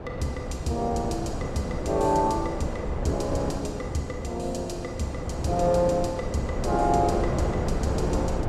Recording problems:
wind on the microphone; below 520 Hz, SNR 3 dB

